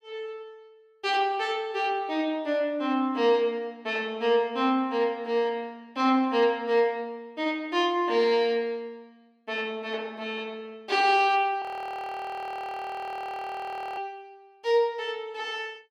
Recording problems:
frozen audio; at 12 s for 2.5 s

